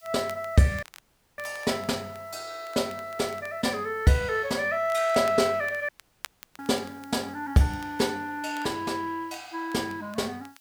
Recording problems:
background hiss; slope +4 dB per octave, SNR 28 dB
crackle; vinyl, SNR 22 dB
audio cutting out; at 1 s for 0.5 s and at 6 s for 0.5 s

